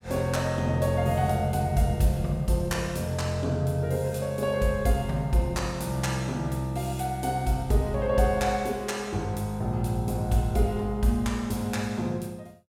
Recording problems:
none

